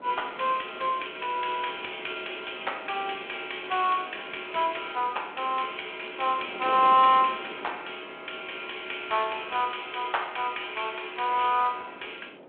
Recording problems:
telephone audio; 300 Hz to 3.4 kHz, G.726
wind noise; below 740 Hz, SNR 19 dB

